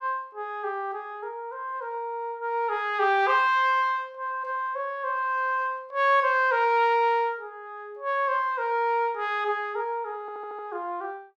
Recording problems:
audio stuttering; at 10 s

